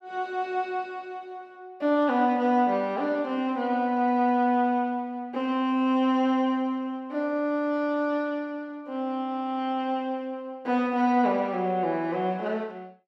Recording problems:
none

